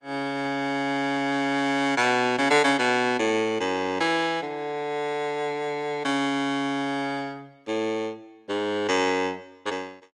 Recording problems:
codec artefacts; Opus, log-spectral distance 2 dB, nothing above 15.1 kHz

